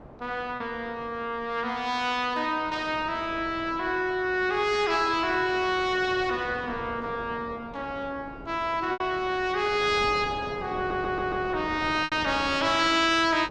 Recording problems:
wind noise; below 700 Hz, SNR 16 dB
packet loss; 1.6% of the sound replaced, filled with repeated pitch periods
stutter; at 11 s

